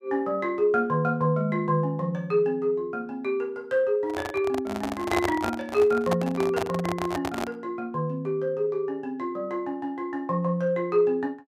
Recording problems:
handling noise; from 4 to 7.5 s; peak +4 dB vs average level

